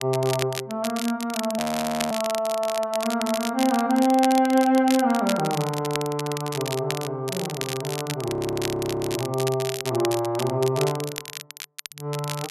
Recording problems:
crackle; vinyl, SNR 9 dB
frozen audio; at 1.5 s for 0.5 s and at 8.5 s for 1 s

